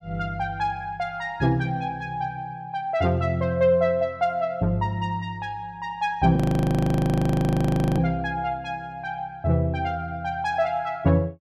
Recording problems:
audio freezing; at 6.5 s for 1.5 s

